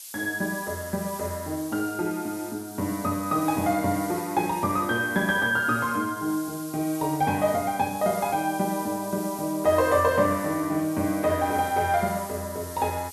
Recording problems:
background hiss; SNR 14 dB

